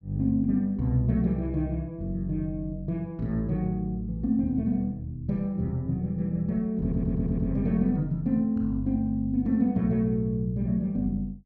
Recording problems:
audio stuttering; at 7 s

